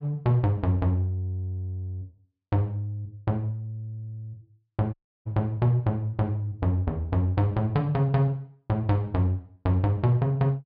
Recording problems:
treble missing; nothing above 5.1 kHz
audio cutting out; at 5 s

